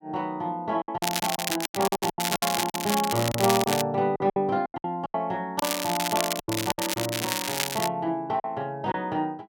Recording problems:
packet loss; 12% of the sound replaced, filled with silence
crackle; from 1 to 4 s and from 5.5 to 8 s; loose cable, SNR 2 dB

